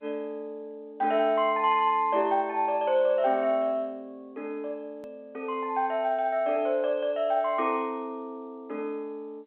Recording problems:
telephone audio; 240 Hz to 3.4 kHz, G.711
hard cut with a click; at 5 s

